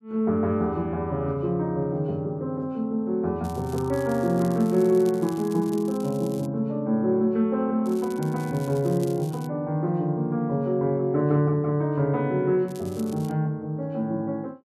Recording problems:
crackle; from 3.5 to 6.5 s, from 8 to 9.5 s and at 13 s; loose cable, SNR 22 dB

